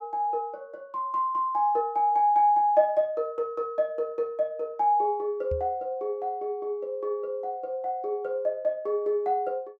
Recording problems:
knock on the microphone; at 5.5 s; peak -4 dB vs average level

